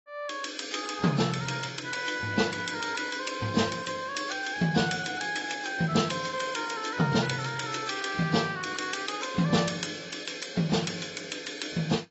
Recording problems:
lossy compression; AAC, log-spectral distance 7 dB, nothing above 7.6 kHz

